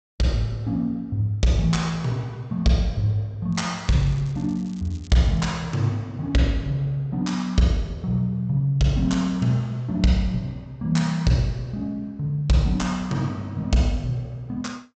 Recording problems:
treble missing; nothing above 8 kHz
crackling; from 3.5 to 5.5 s; loose cable, SNR 27 dB

